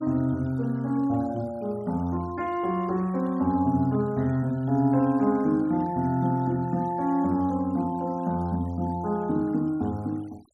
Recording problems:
noise reduction artefacts; signal-to-artefact ratio 28 dB

